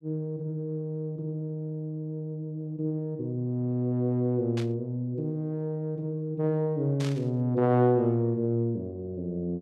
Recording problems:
static burst; at 4.5 s and at 7 s; peak -7 dB vs average level

